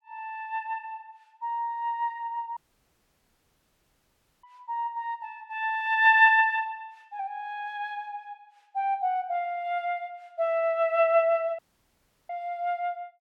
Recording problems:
dropout; at 2.5 s for 2 s and at 12 s for 0.5 s

